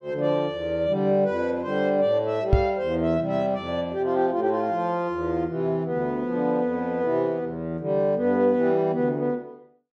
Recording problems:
microphone bump; at 2.5 s; peak +8 dB vs average level

